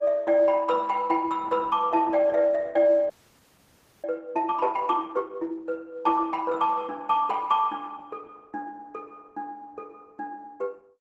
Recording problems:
codec artefacts; Opus, log-spectral distance 3 dB
audio freezing; at 3 s for 1 s

